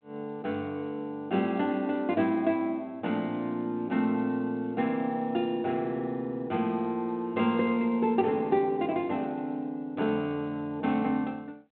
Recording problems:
telephone audio; 170 Hz to 3.5 kHz, G.726

